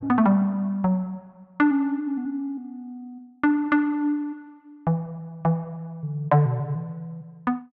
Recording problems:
none

